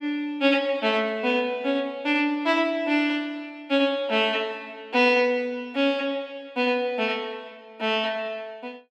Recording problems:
none

